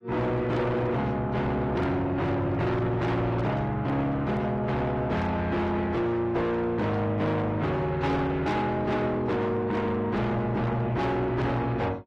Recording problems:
codec artefacts; AAC, log-spectral distance 2 dB, nothing above 13.1 kHz
distortion; soft clipping, signal-to-distortion ratio 7 dB

